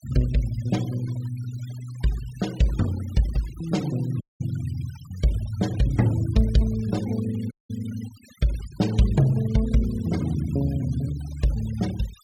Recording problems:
noise reduction artefacts; signal-to-artefact ratio 19 dB
dropout; at 4 s and at 7.5 s

